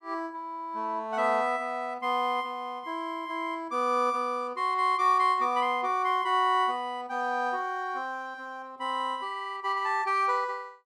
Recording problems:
none

